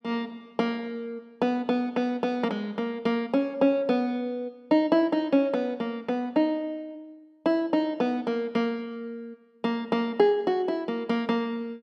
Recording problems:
none

